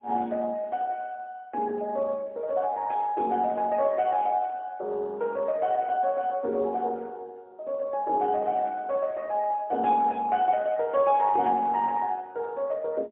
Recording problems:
phone line; 260 Hz to 3.4 kHz, AMR-NB, then MP3

